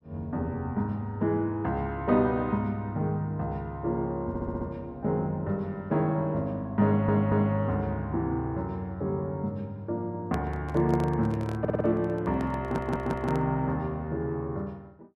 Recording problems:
stutter; 4 times, first at 4.5 s
handling noise; from 10 to 13 s; peak -3 dB vs average level

